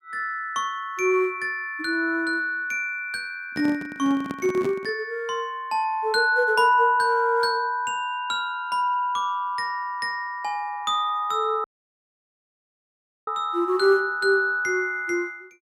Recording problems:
handling noise; from 3.5 to 5 s; peak -4 dB vs average level
audio cutting out; at 12 s for 1.5 s

